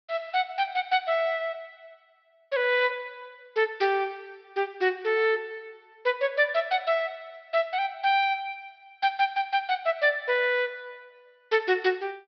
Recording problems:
low-pass filter; nothing above 5.5 kHz

